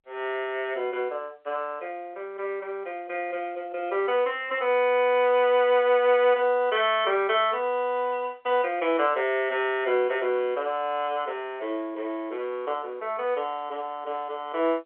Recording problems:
phone line; 320 Hz to 3.4 kHz, G.711

